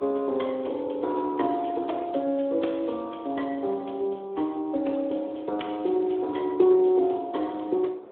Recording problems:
phone line; 240 Hz to 3.5 kHz, Speex
wind on the microphone; below 650 Hz, SNR 21 dB

